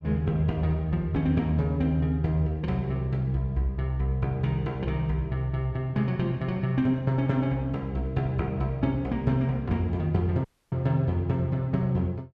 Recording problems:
dropout; at 10 s

